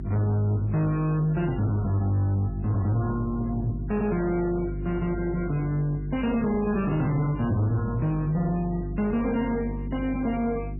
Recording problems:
codec artefacts; MP3, log-spectral distance 2 dB, nothing above 2.6 kHz
distortion; soft clipping, signal-to-distortion ratio 10 dB
hum; 50 Hz, harmonics up to 400 Hz, SNR 8 dB

